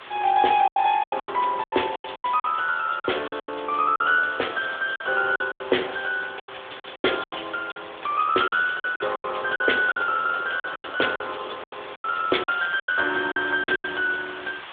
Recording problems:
telephone audio; 300 Hz to 3.6 kHz, AMR-NB
background hiss; SNR 16 dB
wind noise; below 950 Hz, SNR 23 dB
lost packets; 14% of the sound replaced, filled with silence

